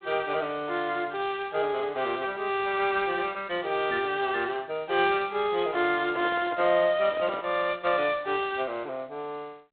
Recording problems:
phone line; 190 Hz to 3.9 kHz, G.726
microphone handling noise; from 6 to 7.5 s; peak -7 dB vs average level

